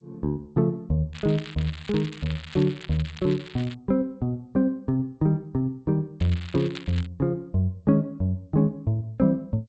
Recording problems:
lossy codec; G.722, log-spectral distance 5 dB
crackle; from 1 to 3.5 s and at 6 s; loose cable, SNR 16 dB

